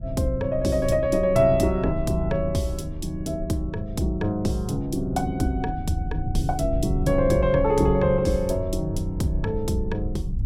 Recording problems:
rumble; below 92 Hz, SNR 9 dB

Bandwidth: 16 kHz